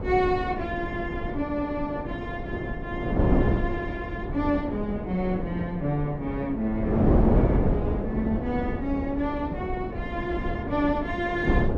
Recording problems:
wind on the microphone; below 370 Hz, SNR 0 dB

